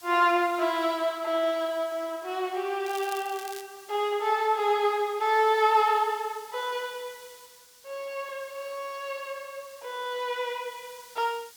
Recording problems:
background hiss; slope +2 dB per octave, SNR 22 dB
crackle; at 3 s; loose cable, SNR 16 dB

